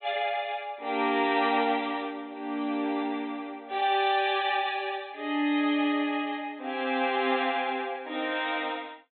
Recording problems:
treble missing; nothing above 4 kHz

